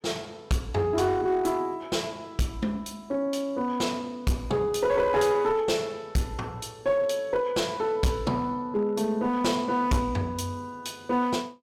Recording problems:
distortion; hard clipping, uneven, signal-to-distortion ratio 11 dB

